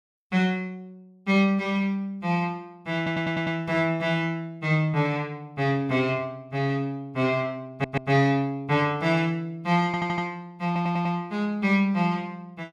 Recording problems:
audio stuttering; 4 times, first at 3 s

